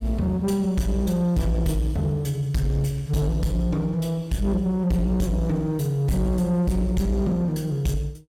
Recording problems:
distorted audio; soft clipping, signal-to-distortion ratio 11 dB

